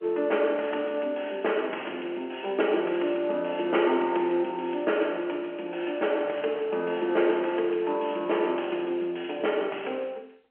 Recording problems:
phone line; 260 Hz to 3.1 kHz, G.711

